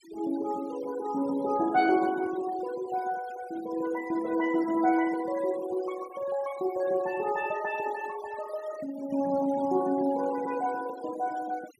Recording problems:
denoising artefacts; signal-to-artefact ratio 18 dB

